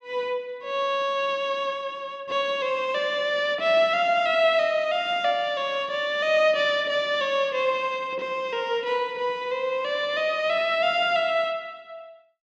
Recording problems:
none

